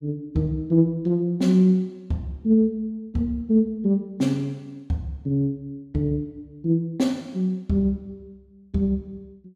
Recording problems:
none

